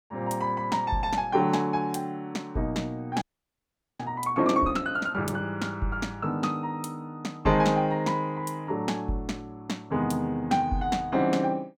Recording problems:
audio freezing; at 3 s for 1 s

